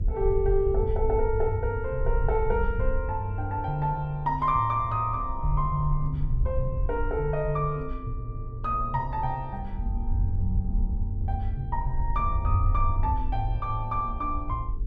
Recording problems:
hum; 50 Hz, harmonics up to 450 Hz, SNR 23 dB
wind noise; below 64 Hz, SNR 3 dB

